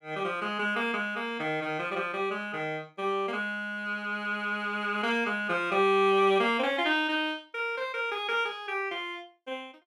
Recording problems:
none

